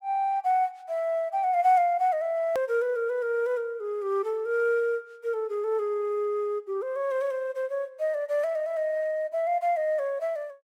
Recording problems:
click at an edit; at 2.5 s

